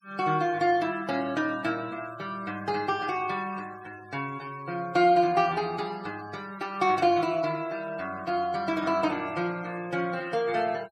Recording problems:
denoising artefacts; signal-to-artefact ratio 23 dB

